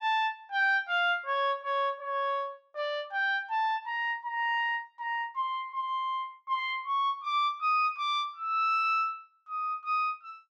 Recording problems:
none

